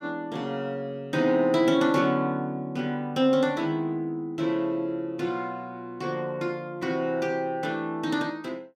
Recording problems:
none

